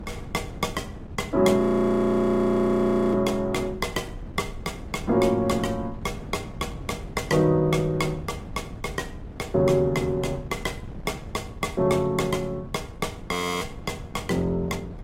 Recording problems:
lossy compression; AAC, log-spectral distance 2 dB, nothing above 15.5 kHz
wind noise; below 220 Hz, SNR 14 dB
audio freezing; at 1.5 s for 1.5 s and at 13 s

